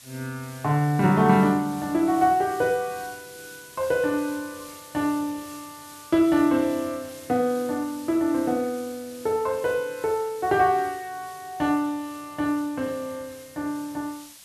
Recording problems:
hiss; slope +2 dB per octave, SNR 20 dB

